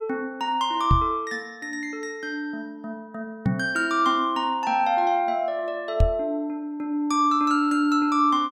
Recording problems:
microphone bump; at 1 s, at 3.5 s and at 6 s; peak +6 dB vs average level

